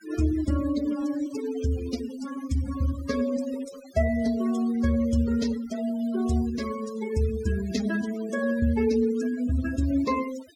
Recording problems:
denoising artefacts; signal-to-artefact ratio 15 dB

